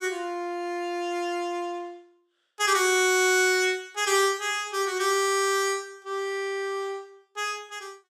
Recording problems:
none

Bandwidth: 14.5 kHz